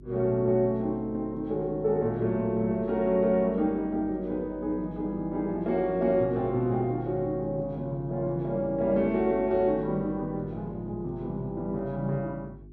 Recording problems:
hum; 50 Hz, harmonics up to 400 Hz, SNR 19 dB

